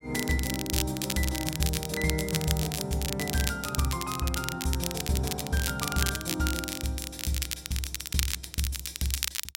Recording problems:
crackling; vinyl, SNR 2 dB

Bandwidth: 16 kHz